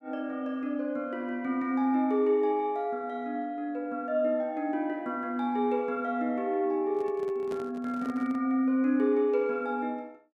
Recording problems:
handling noise; from 7 to 8.5 s; peak -8 dB vs average level

